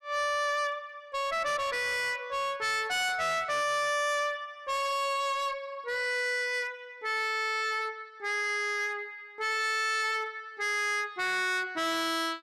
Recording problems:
distorted audio; hard clipping, uneven, signal-to-distortion ratio 7 dB

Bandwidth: 13 kHz